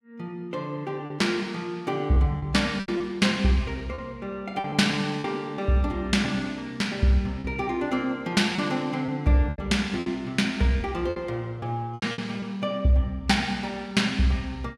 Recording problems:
packet loss; 6% of the sound replaced, filled with repeated pitch periods

